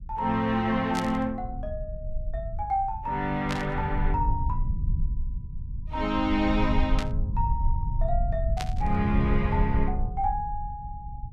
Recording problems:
low-frequency rumble; below 78 Hz, SNR 3 dB
burst of static; 4 times, first at 1 s; peak -1 dB vs average level

